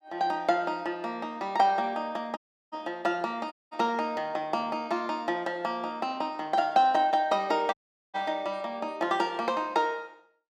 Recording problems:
audio cutting out; at 2.5 s, at 3.5 s and at 7.5 s

